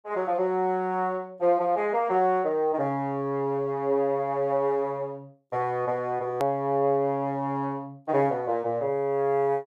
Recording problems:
hard cut with a click; at 6.5 s

